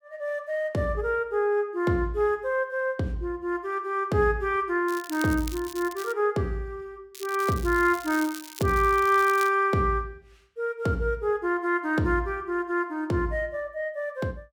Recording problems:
crackling; from 5 to 6 s and from 7 to 9.5 s; loose cable, SNR 15 dB

